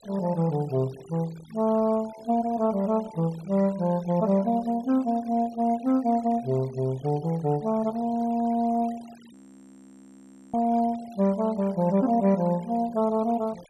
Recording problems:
denoising artefacts; signal-to-artefact ratio 24 dB
audio freezing; at 9.5 s for 1 s

